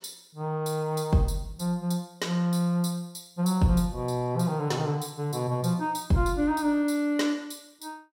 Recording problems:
none

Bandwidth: 16.5 kHz